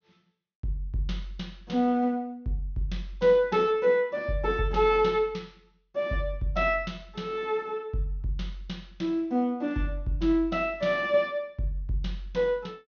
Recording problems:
treble cut off; nothing above 6.5 kHz

